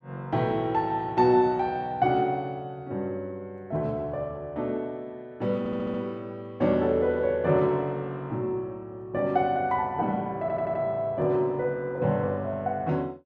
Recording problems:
stutter; at 5.5 s and at 10 s

